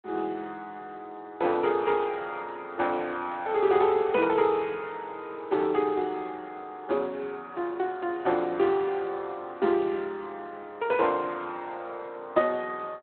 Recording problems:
telephone audio; 240 Hz to 3.8 kHz, Speex

